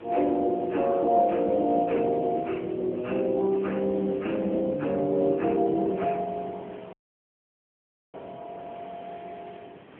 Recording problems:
phone line; 260 Hz to 2.6 kHz, AMR-NB
background hiss; SNR 28 dB
wind on the microphone; below 670 Hz, SNR 21 dB
dropout; at 7 s for 1 s

